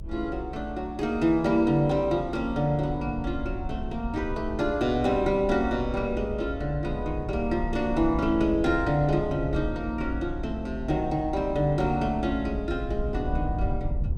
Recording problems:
low-frequency rumble; below 78 Hz, SNR 9 dB

